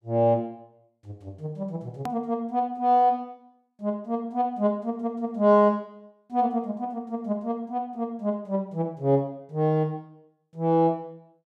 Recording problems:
click at an edit; at 2 s

